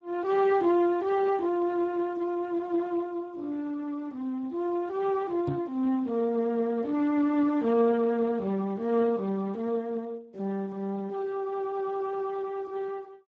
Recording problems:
lossy codec; Speex, log-spectral distance 2 dB
knock on the microphone; at 5.5 s; peak 0 dB vs average level

